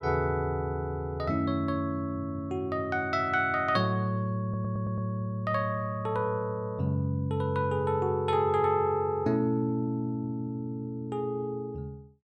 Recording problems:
audio stuttering; at 4.5 s

